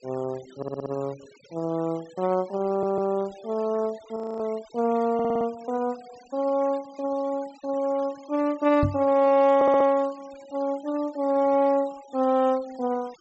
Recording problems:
low-pass filter; nothing above 7.9 kHz
noise reduction artefacts; signal-to-artefact ratio 24 dB
stutter; 4 times, first at 0.5 s
frozen audio; at 4 s
microphone thump; at 9 s; peak +3 dB vs average level

